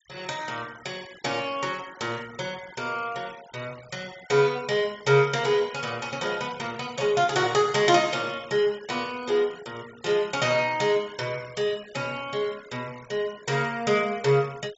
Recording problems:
treble cut off; nothing above 8 kHz
noise reduction artefacts; signal-to-artefact ratio 22 dB

